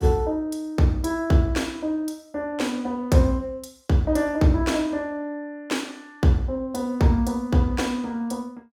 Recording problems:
none

